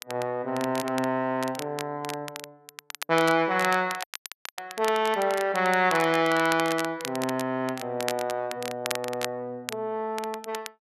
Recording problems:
crackle; vinyl, SNR 11 dB
dropout; at 4 s for 0.5 s

